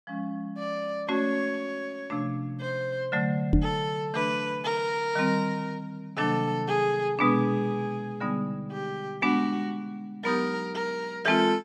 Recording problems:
knock on the microphone; at 3.5 s; peak +9 dB vs average level

